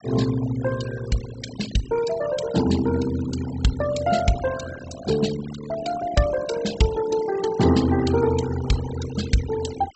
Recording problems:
treble cut off; nothing above 8 kHz
denoising artefacts; signal-to-artefact ratio 13 dB

